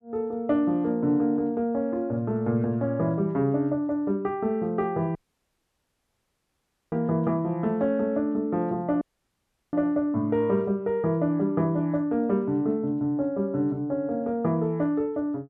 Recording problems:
audio cutting out; at 5 s for 2 s and at 9 s for 0.5 s

